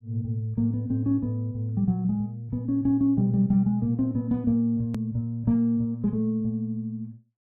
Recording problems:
edit click; at 5 s

